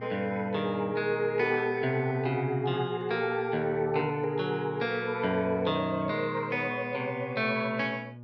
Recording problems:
hum; 60 Hz, harmonics up to 840 Hz, SNR 16 dB

